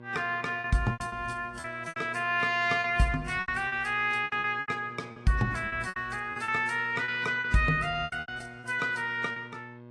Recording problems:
lossy codec; AAC, log-spectral distance 2 dB, nothing above 11 kHz
hum; 60 Hz, harmonics up to 1.7 kHz, SNR 19 dB
lost packets; 13% of the sound replaced, filled with repeated pitch periods

